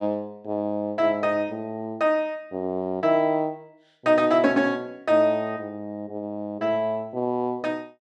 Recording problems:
none

